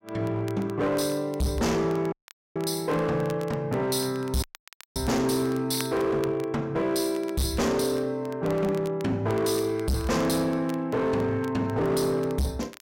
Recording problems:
distortion; hard clipping, signal-to-distortion ratio 8 dB
crackle; vinyl, SNR 22 dB
dropout; at 2 s and at 4.5 s for 0.5 s

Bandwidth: 16 kHz